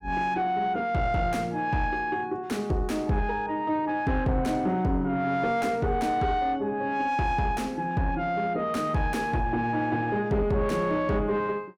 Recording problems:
distorted audio; soft clipping, signal-to-distortion ratio 11 dB

